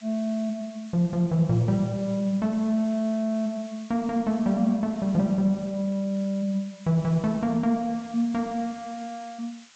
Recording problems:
treble cut off; nothing above 8 kHz
background hiss; SNR 24 dB

